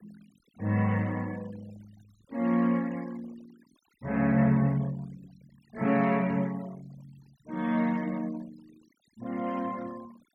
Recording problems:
denoising artefacts; signal-to-artefact ratio 25 dB

